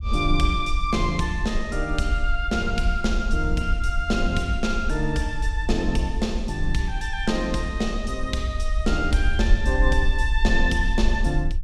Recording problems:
rumble; below 52 Hz, SNR 3 dB

